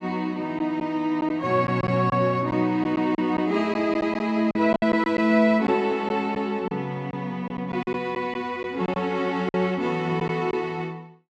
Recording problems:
packet loss; 6% of the sound replaced, filled with silence

